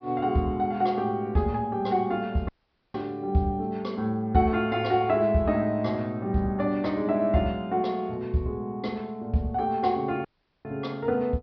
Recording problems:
treble missing; nothing above 5.5 kHz
audio cutting out; at 2.5 s and at 10 s

